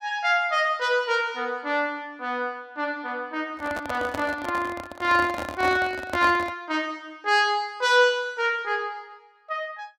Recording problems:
handling noise; from 3.5 to 6.5 s; peak -1 dB vs average level

